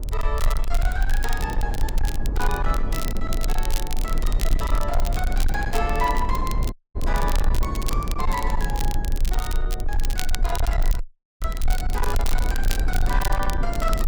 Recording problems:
distorted audio; hard clipping, uneven, signal-to-distortion ratio 10 dB
rumble; below 42 Hz, strongest tone 22 Hz, SNR -3 dB
wind on the microphone; below 350 Hz, SNR 3 dB
crackling; vinyl, SNR 6 dB
audio cutting out; at 6.5 s and at 11 s

